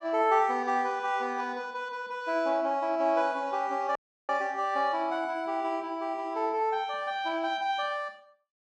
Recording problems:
dropout; at 4 s

